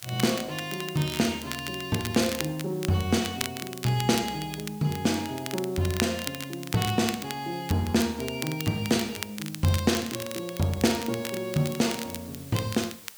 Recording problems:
hiss; slope +1 dB per octave, SNR 20 dB
crackling; vinyl, SNR 9 dB

